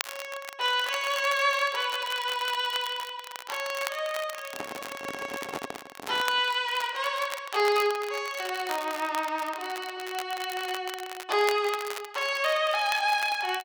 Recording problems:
crackle; vinyl, SNR 12 dB
handling noise; from 4.5 to 6.5 s; peak -3 dB vs average level

